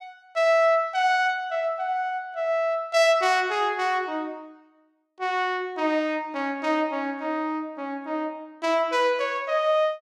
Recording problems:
none

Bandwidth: 14.5 kHz